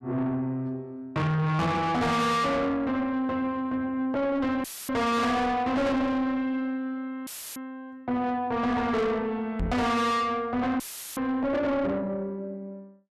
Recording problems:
distortion; soft clipping, signal-to-distortion ratio 6 dB
audio cutting out; at 4.5 s, at 7.5 s and at 11 s; filled with static
knock on the microphone; at 9.5 s; peak 0 dB vs average level

